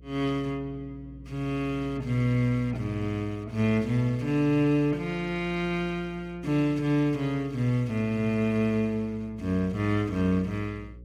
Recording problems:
hum; 60 Hz, harmonics up to 540 Hz, SNR 20 dB

